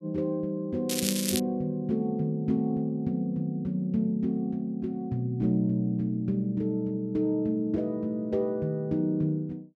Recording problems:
crackling; at 1 s; loose cable, SNR 2 dB

